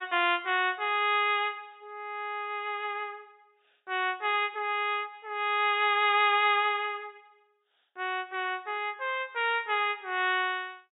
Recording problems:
low-pass filter; nothing above 4 kHz

